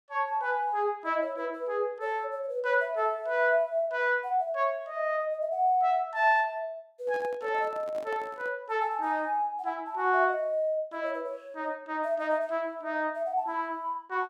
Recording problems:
handling noise; from 7 to 8.5 s; peak -12 dB vs average level

